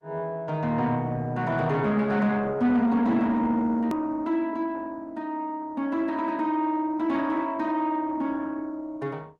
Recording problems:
lossy codec; Opus, log-spectral distance 2 dB, nothing above 16.1 kHz
distortion; soft clipping, signal-to-distortion ratio 10 dB
click at an edit; at 4 s

